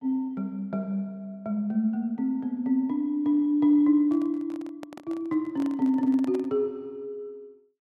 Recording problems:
handling noise; from 4 to 6.5 s; peak -10 dB vs average level

